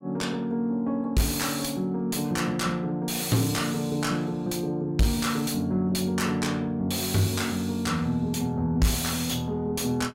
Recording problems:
distorted audio; soft clipping, signal-to-distortion ratio 7 dB

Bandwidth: 16 kHz